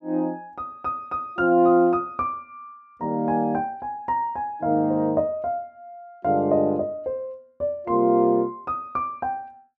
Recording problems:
none

